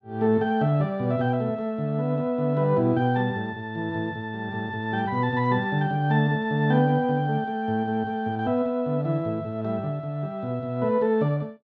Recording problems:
none

